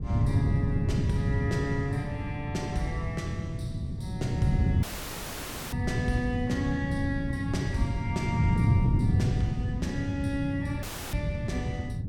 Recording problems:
wind noise; below 170 Hz, SNR -4 dB
audio cutting out; at 5 s for 1 s and at 11 s

